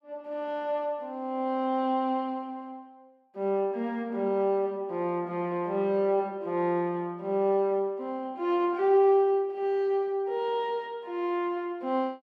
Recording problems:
none

